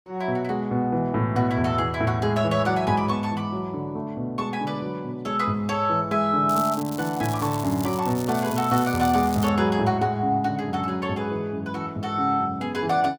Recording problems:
crackling; from 6.5 to 9.5 s; loose cable, SNR 14 dB

